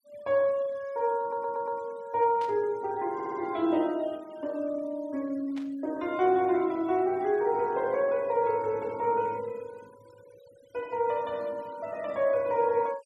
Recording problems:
denoising artefacts; signal-to-artefact ratio 26 dB
audio stuttering; at 1 s and at 3 s
static burst; at 2.5 s and at 5.5 s; peak -14 dB vs average level

